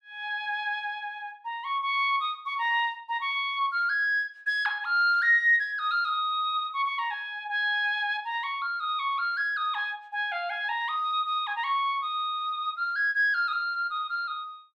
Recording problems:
none

